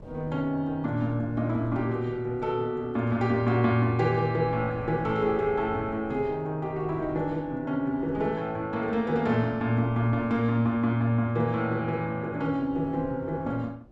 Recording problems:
wind noise; below 330 Hz, SNR 21 dB

